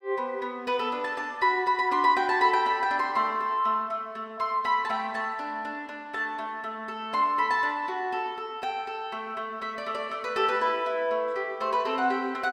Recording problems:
none

